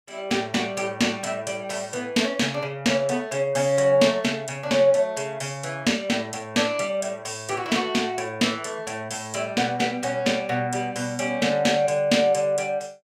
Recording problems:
none

